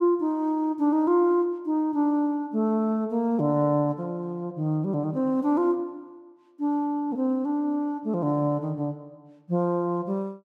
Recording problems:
none

